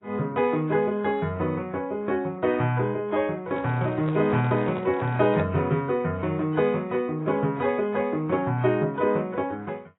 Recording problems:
codec artefacts; AAC, log-spectral distance 2 dB, nothing above 3.4 kHz
microphone handling noise; from 3.5 to 5.5 s; peak -5 dB vs average level

